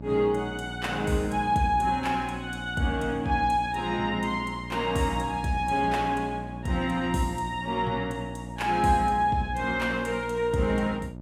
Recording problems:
hum; 60 Hz, harmonics up to 960 Hz, SNR 12 dB

